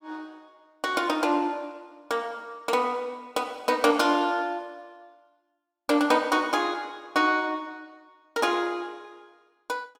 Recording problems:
none

